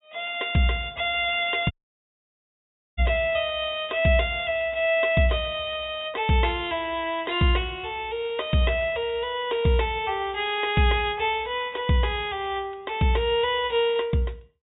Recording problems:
low-pass filter; nothing above 4 kHz
dropout; at 1.5 s for 1.5 s

